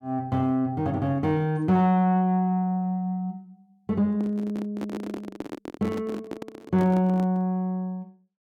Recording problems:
distorted audio; soft clipping, signal-to-distortion ratio 10 dB
microphone handling noise; from 4 to 7.5 s; peak -4 dB vs average level

